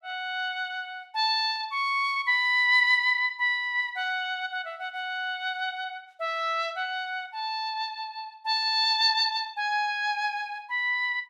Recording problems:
none

